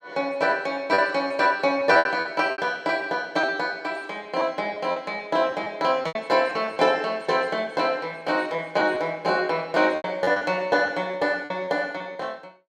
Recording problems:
packet loss; 8% of the sound replaced, filled with repeated pitch periods

